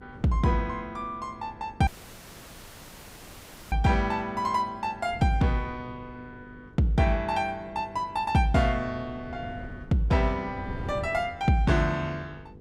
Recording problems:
electrical hum; 50 Hz, harmonics up to 500 Hz, SNR 25 dB
wind on the microphone; below 240 Hz, SNR 17 dB
dropout; at 2 s for 2 s

